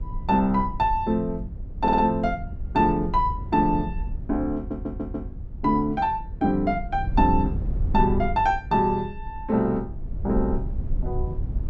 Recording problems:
rumble; below 78 Hz, SNR 9 dB
audio stuttering; at 2 s and at 4.5 s

